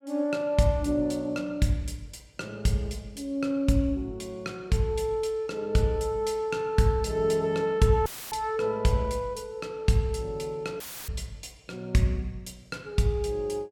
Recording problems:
dropout; at 8 s and at 11 s; filled with static

